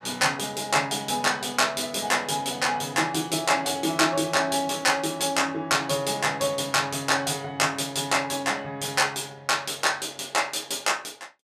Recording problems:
none

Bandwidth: 14.5 kHz